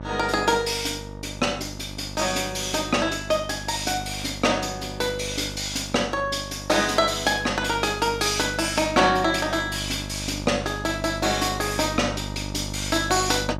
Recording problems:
hum; 50 Hz, harmonics up to 1.3 kHz, SNR 12 dB

